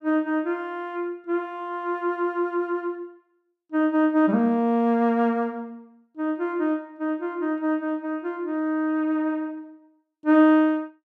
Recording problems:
none

